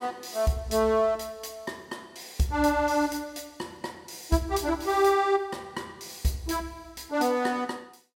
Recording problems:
none

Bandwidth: 16.5 kHz